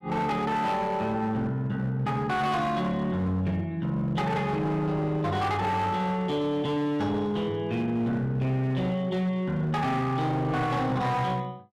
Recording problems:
distortion; hard clipping, signal-to-distortion ratio 10 dB

